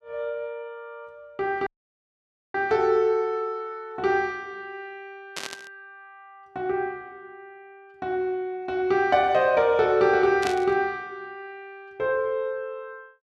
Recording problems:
audio cutting out; at 1.5 s for 1 s
burst of static; at 5.5 s and at 10 s; peak -3 dB vs average level

